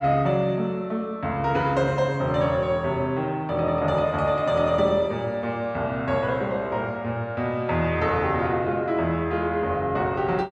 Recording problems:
none

